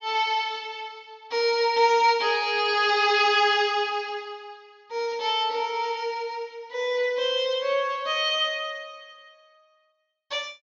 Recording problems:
treble cut off; nothing above 7.1 kHz

